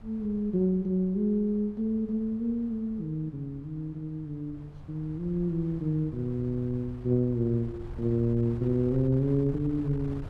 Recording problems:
wind noise; below 130 Hz, SNR 17 dB

